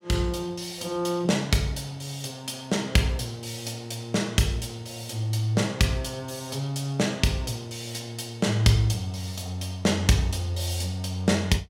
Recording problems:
none

